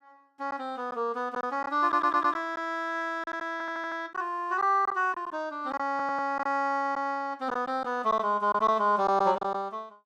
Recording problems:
lost packets; 6% of the sound replaced, filled with silence
stutter; at 2 s, at 3.5 s and at 6 s

